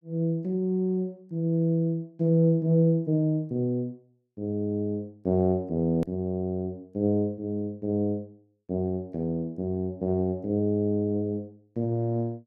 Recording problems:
hard cut with a click; at 6 s

